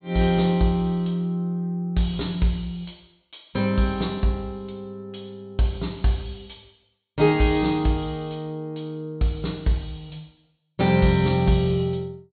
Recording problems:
treble cut off; nothing above 4.4 kHz

